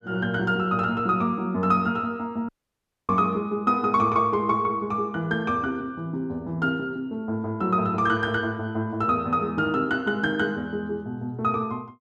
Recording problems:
audio cutting out; at 2.5 s for 0.5 s

